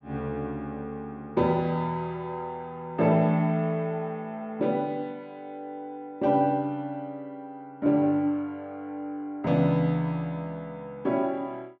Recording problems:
none

